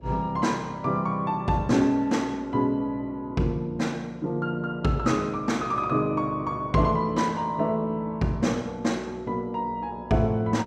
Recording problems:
electrical hum; 60 Hz, harmonics up to 660 Hz, SNR 24 dB

